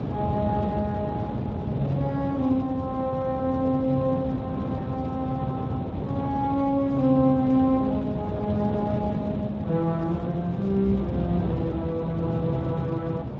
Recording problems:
codec artefacts; Speex, log-spectral distance 2 dB
wind on the microphone; below 380 Hz, SNR 5 dB

